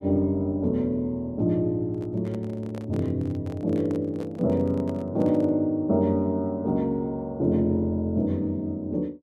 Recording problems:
handling noise; from 2 to 5.5 s; peak -10 dB vs average level

